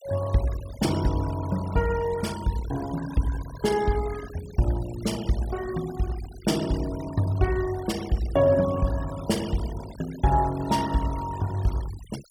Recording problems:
denoising artefacts; signal-to-artefact ratio 16 dB

